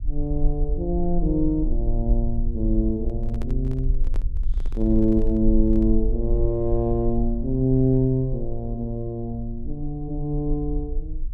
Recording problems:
rumble; below 44 Hz, strongest tone 20 Hz, SNR 4 dB
microphone handling noise; from 3 to 6 s; peak -9 dB vs average level

